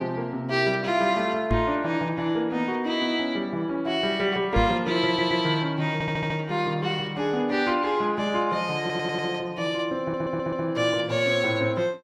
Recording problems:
knock on the microphone; at 1.5 s and at 4.5 s; peak +3 dB vs average level
audio stuttering; 4 times, first at 5 s

